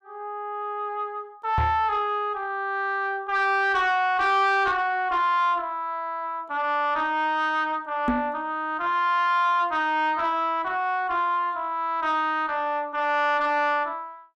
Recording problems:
distortion; soft clipping, signal-to-distortion ratio 10 dB
microphone bump; at 1.5 s and at 8 s; peak +4 dB vs average level

